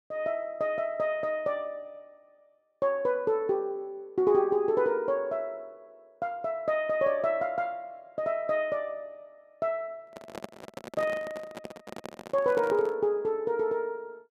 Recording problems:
handling noise; from 10 to 13 s; peak -6 dB vs average level

